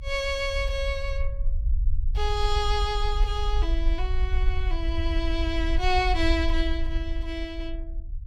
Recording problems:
low-frequency rumble; below 54 Hz, SNR 0 dB

